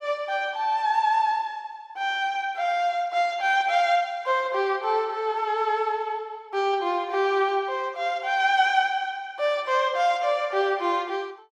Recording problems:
none

